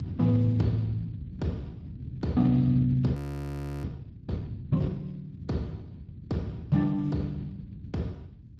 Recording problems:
lossy codec; Speex, log-spectral distance 2 dB, nothing above 14.1 kHz
rumble; below 180 Hz, SNR 12 dB
audio freezing; at 3 s for 0.5 s

